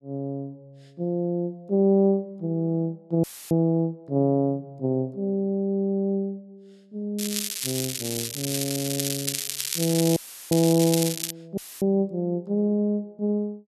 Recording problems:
dropout; at 3 s, at 10 s and at 12 s; filled with static
crackle; from 7 to 11 s; loose cable, SNR 3 dB

